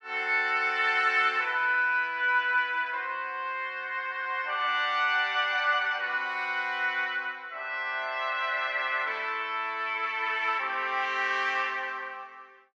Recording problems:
none

